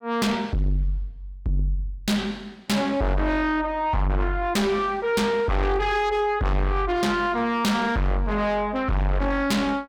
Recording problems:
distortion; soft clipping, signal-to-distortion ratio 6 dB

